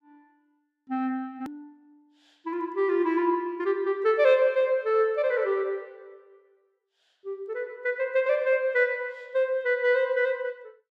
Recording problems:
click at an edit; at 1.5 s

